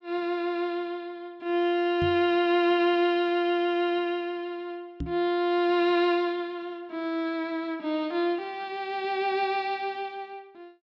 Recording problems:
low-pass filter; nothing above 8 kHz
microphone thump; at 2 s and at 5 s; peak -2 dB vs average level

